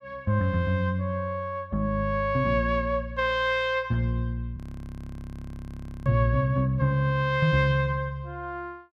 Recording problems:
frozen audio; at 4.5 s for 1.5 s

